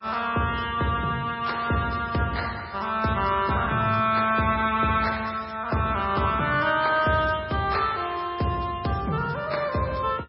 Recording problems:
lossy compression; MP3, log-spectral distance 5 dB, nothing above 5.3 kHz

